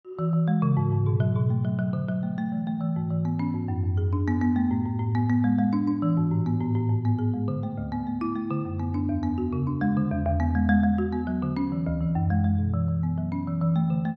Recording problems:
none

